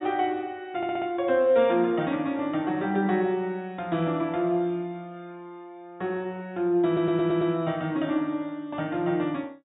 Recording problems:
treble missing; nothing above 4 kHz
stutter; at 1 s and at 7 s

